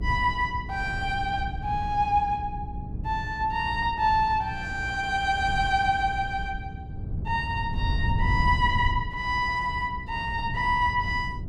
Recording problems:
hum; 60 Hz, harmonics up to 420 Hz, SNR 16 dB
wind on the microphone; below 120 Hz, SNR 8 dB

